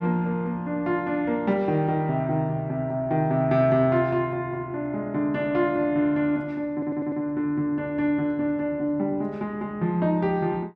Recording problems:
stutter; at 6.5 s

